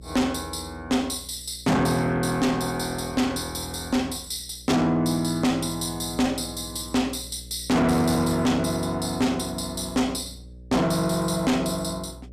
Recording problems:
distorted audio; soft clipping, signal-to-distortion ratio 7 dB
hum; 60 Hz, harmonics up to 540 Hz, SNR 20 dB

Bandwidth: 14.5 kHz